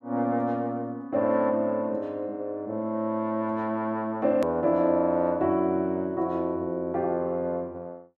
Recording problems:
edit click; at 4.5 s

